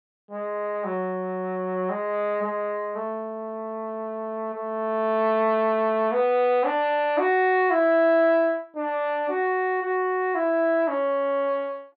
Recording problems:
treble missing; nothing above 5 kHz

